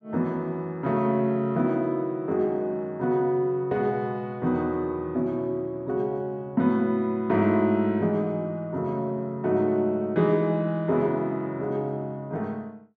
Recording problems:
none

